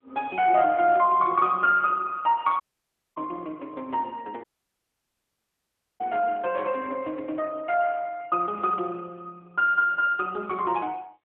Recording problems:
phone line; 260 Hz to 3.3 kHz, AMR-NB
audio cutting out; at 2.5 s for 0.5 s and at 4.5 s for 1.5 s

